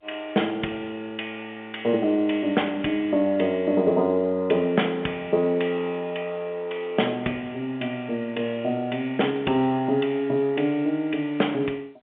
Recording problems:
telephone audio; 300 Hz to 3.4 kHz, G.711

